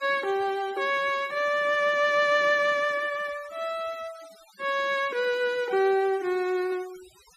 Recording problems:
denoising artefacts; signal-to-artefact ratio 22 dB

